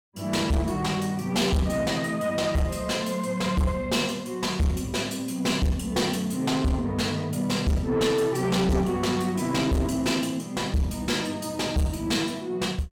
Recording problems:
distorted audio; soft clipping, signal-to-distortion ratio 7 dB

